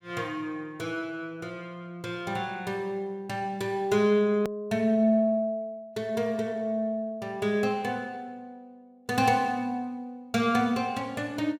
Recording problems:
edit click; at 4.5 s

